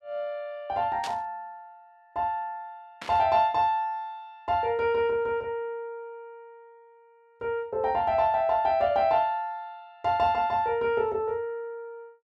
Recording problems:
static burst; at 1 s and at 3 s; peak -6 dB vs average level

